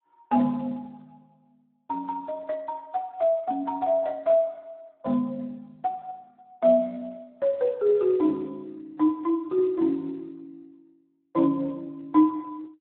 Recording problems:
telephone audio; 220 Hz to 2.1 kHz, Speex

